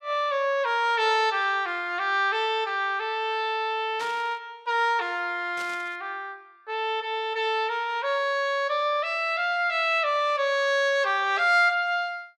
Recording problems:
burst of static; at 4 s and at 5.5 s; peak -11 dB vs average level

